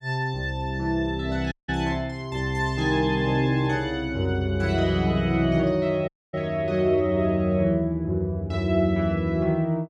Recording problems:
audio cutting out; at 1.5 s and at 6 s

